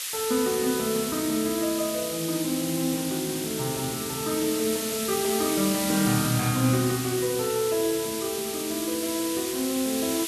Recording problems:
hiss; SNR 4 dB

